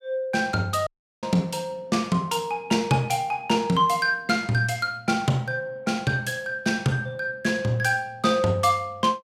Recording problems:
audio cutting out; at 1 s

